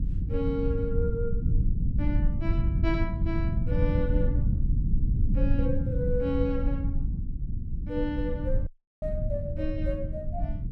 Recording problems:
rumble; below 110 Hz, SNR -4 dB
dropout; at 8.5 s

